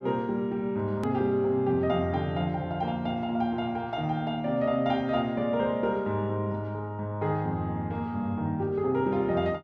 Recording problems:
hard cut with a click; at 1 s

